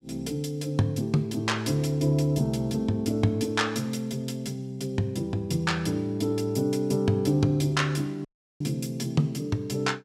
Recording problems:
audio cutting out; at 8.5 s

